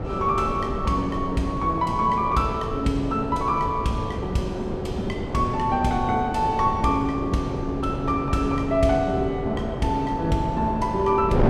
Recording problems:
wind noise; below 460 Hz, SNR 7 dB

